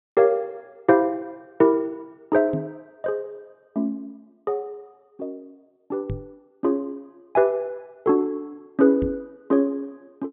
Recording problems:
low-pass filter; nothing above 4 kHz
microphone thump; at 2.5 s, at 6 s and at 9 s; peak 0 dB vs average level

